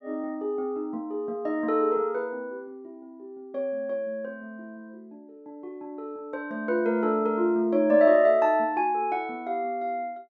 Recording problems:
none

